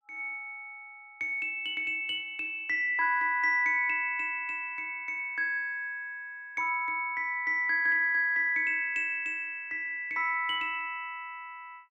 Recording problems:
none

